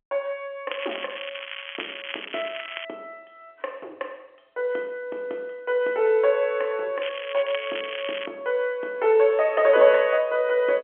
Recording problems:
telephone audio; 300 Hz to 3.4 kHz, G.711
crackling; from 0.5 to 3 s and from 7 to 8.5 s; loose cable, SNR 11 dB

